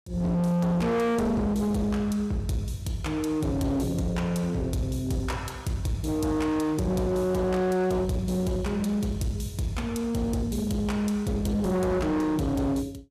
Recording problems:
distorted audio; hard clipping, uneven, signal-to-distortion ratio 7 dB

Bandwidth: 14.5 kHz